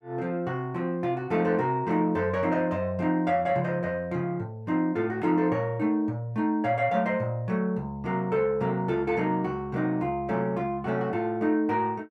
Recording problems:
none

